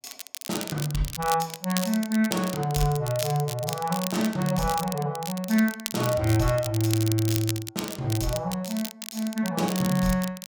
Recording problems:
crackling; vinyl, SNR 9 dB

